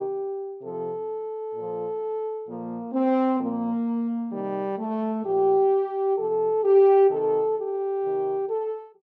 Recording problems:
none

